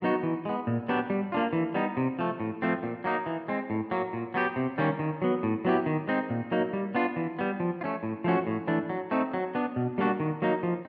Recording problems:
none

